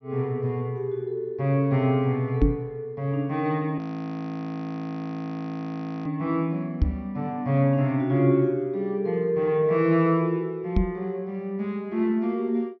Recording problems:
low-pass filter; nothing above 5.9 kHz
knock on the microphone; at 2.5 s, at 7 s and at 11 s; peak +8 dB vs average level
frozen audio; at 4 s for 2.5 s

